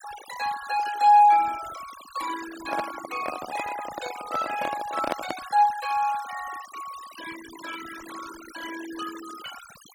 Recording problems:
denoising artefacts; signal-to-artefact ratio 15 dB
microphone handling noise; from 2.5 to 5.5 s; peak +1 dB vs average level

